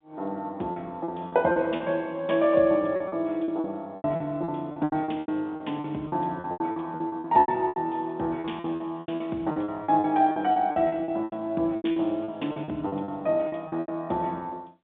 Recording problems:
phone line; 190 Hz to 3.6 kHz, G.711
packet loss; 17% of the sound replaced, filled with repeated pitch periods

